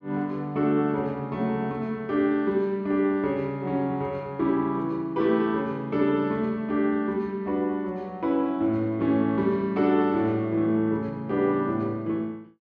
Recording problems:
none

